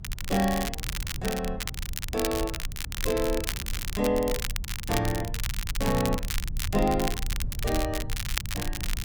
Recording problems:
rumble; below 74 Hz, strongest tone 28 Hz, SNR 7 dB
wind noise; below 130 Hz, SNR 15 dB
crackling; vinyl, SNR 5 dB

